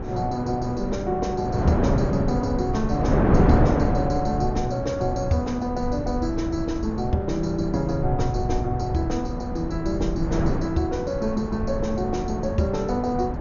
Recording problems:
low-pass filter; nothing above 6.9 kHz
rumble; below 92 Hz, SNR 8 dB
wind on the microphone; below 480 Hz, SNR 1 dB

